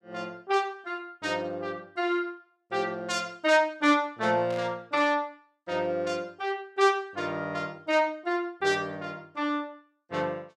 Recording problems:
static burst; at 4.5 s; peak -13 dB vs average level

